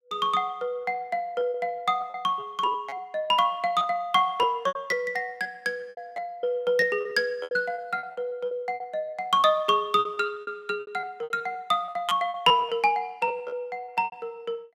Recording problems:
lost packets; 13% of the sound replaced, filled with repeated pitch periods

